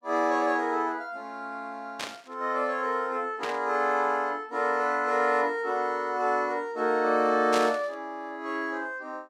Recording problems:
static burst; at 2 s, at 3.5 s and at 7.5 s; peak -1 dB vs average level

